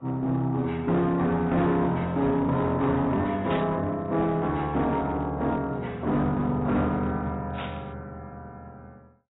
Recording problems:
codec artefacts; AAC, log-spectral distance 2 dB, nothing above 3.8 kHz
distorted audio; hard clipping, uneven, signal-to-distortion ratio 10 dB
static burst; at 3.5 s and at 7.5 s; peak -8 dB vs average level

